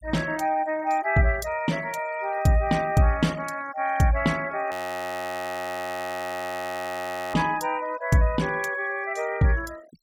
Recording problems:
denoising artefacts; signal-to-artefact ratio 22 dB
audio freezing; at 4.5 s for 2.5 s

